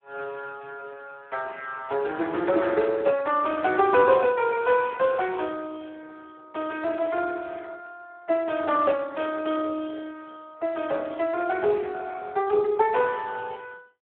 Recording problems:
phone line; 340 Hz to 3 kHz, Speex

